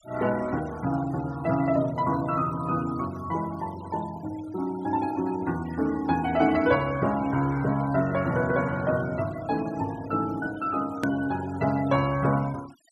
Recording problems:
denoising artefacts; signal-to-artefact ratio 19 dB
edit click; at 11 s

